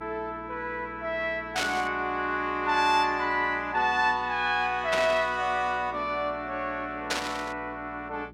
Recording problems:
hum; 60 Hz, harmonics up to 420 Hz, SNR 21 dB
burst of static; at 1.5 s, at 5 s and at 7 s; peak +3 dB vs average level

